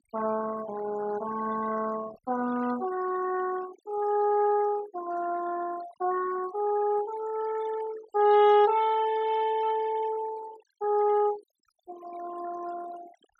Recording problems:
denoising artefacts; signal-to-artefact ratio 16 dB

